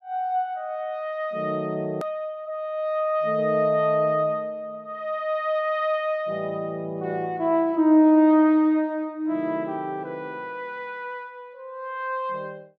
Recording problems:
click at an edit; at 2 s

